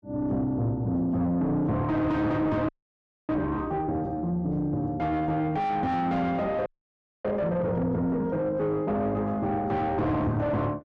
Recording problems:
distortion; soft clipping, signal-to-distortion ratio 7 dB
frozen audio; at 2.5 s for 0.5 s and at 6.5 s for 0.5 s

